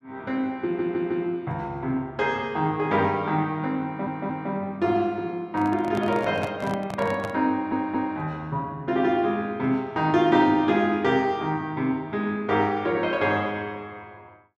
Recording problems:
audio stuttering; at 0.5 s, at 4 s and at 7.5 s
microphone handling noise; from 5.5 to 7.5 s; peak -3 dB vs average level

